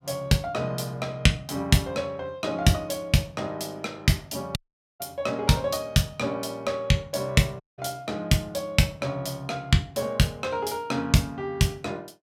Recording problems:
audio cutting out; at 4.5 s and at 7.5 s

